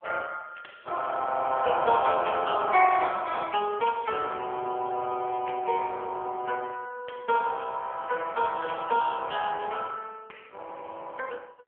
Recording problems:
phone line; 340 Hz to 3.3 kHz, AMR-NB
crackle; from 0.5 to 5.5 s and from 8 to 9.5 s; loose cable, SNR 29 dB

